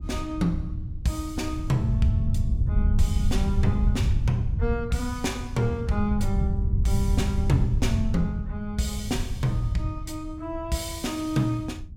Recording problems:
rumble; below 100 Hz, SNR -1 dB

